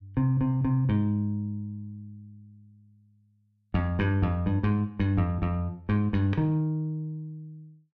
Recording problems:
none

